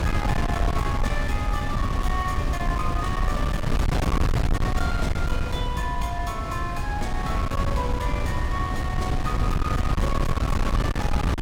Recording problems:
distorted audio; hard clipping, signal-to-distortion ratio 13 dB
wind noise; below 170 Hz, SNR -4 dB
crackle; from 2 to 4.5 s; loose cable, SNR 25 dB

